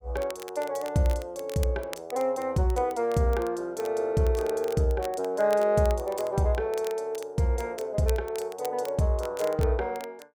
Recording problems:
crackling; vinyl, SNR 19 dB

